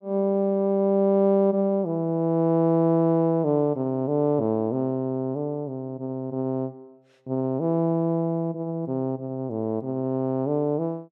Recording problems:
none

